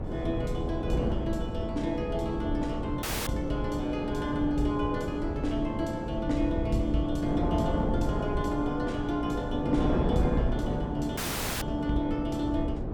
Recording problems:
mains hum; 60 Hz, harmonics up to 540 Hz, SNR 13 dB
rumble; below 110 Hz, SNR 10 dB
wind on the microphone; below 380 Hz, SNR 2 dB
dropout; at 3 s and at 11 s

